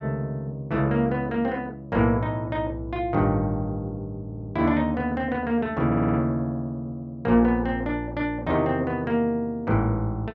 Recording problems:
audio stuttering; at 4.5 s and at 6 s

